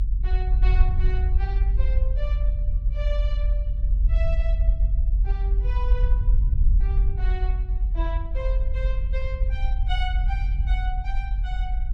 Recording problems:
low-frequency rumble; below 52 Hz, strongest tone 44 Hz, SNR -13 dB

